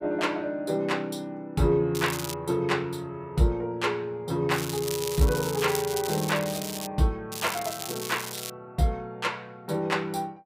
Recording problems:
crackle; at 2 s, from 4.5 to 7 s and from 7.5 to 8.5 s; loose cable, SNR 7 dB

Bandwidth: 15.5 kHz